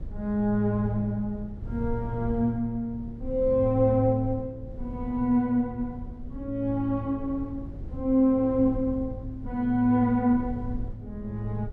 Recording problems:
rumble; below 96 Hz, SNR 14 dB

